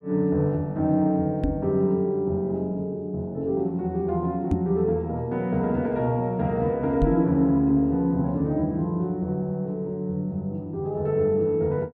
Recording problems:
microphone thump; at 1.5 s, at 4.5 s and at 7 s; peak +4 dB vs average level

